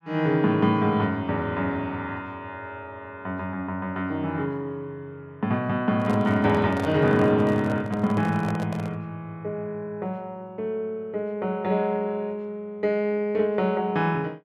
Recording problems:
handling noise; from 6 to 9 s; peak -5 dB vs average level

